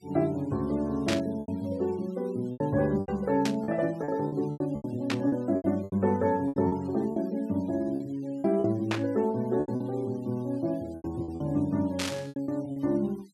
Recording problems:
denoising artefacts; signal-to-artefact ratio 27 dB
lost packets; 11% of the sound replaced, filled with repeated pitch periods
burst of static; 5 times, first at 1 s; peak +2 dB vs average level

